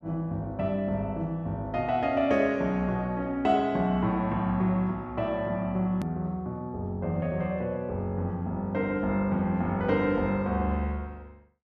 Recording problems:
click at an edit; at 6 s

